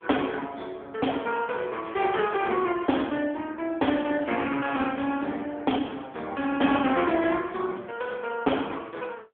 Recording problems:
phone line; 220 Hz to 3.4 kHz, AMR-NB

